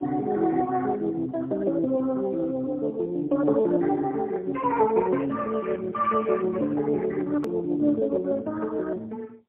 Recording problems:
phone line; 220 Hz to 2.9 kHz, AMR-NB, then MP3
click at an edit; at 7.5 s

